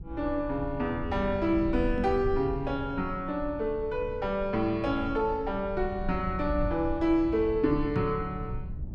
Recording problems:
low-frequency rumble; below 98 Hz, SNR 10 dB
microphone bump; at 2 s and at 8 s; peak 0 dB vs average level

